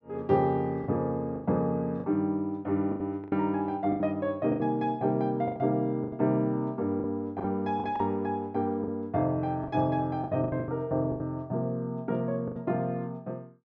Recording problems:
packet loss; 9% of the sound replaced, filled with the last packet

